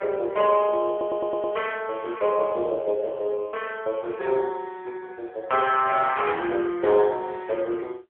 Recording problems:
phone line; 370 Hz to 2.4 kHz, AMR-NB
audio stuttering; at 1 s
burst of static; at 6 s; peak -12 dB vs average level

